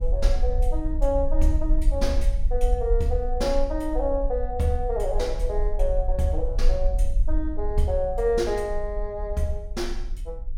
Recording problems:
rumble; below 44 Hz, SNR 1 dB

